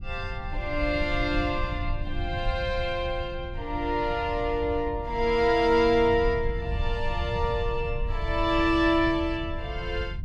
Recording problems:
low-frequency rumble; below 86 Hz, SNR 8 dB

